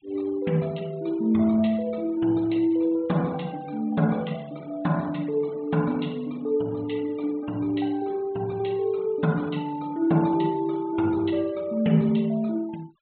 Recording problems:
treble missing; nothing above 4 kHz
denoising artefacts; signal-to-artefact ratio 26 dB

